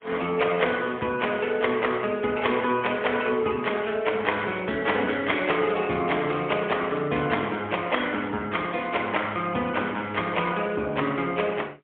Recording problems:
telephone audio; 170 Hz to 3.4 kHz, AMR-NB, then MP3

